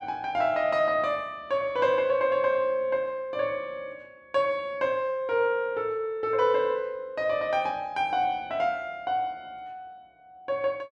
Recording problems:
none

